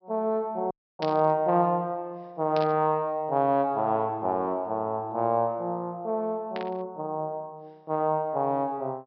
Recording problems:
treble missing; nothing above 5.5 kHz
audio cutting out; at 0.5 s
burst of static; at 1 s, at 2.5 s and at 6.5 s; peak -6 dB vs average level

